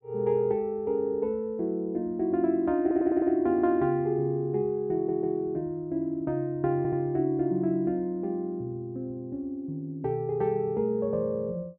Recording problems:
audio stuttering; at 3 s, at 5 s and at 7 s

